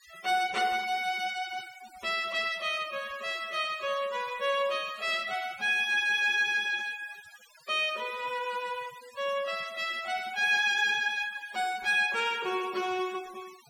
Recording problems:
denoising artefacts; signal-to-artefact ratio 20 dB

